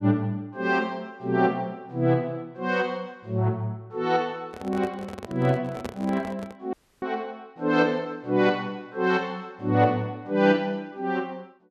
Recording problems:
microphone handling noise; from 4.5 to 6.5 s; peak -3 dB vs average level
audio cutting out; at 6.5 s

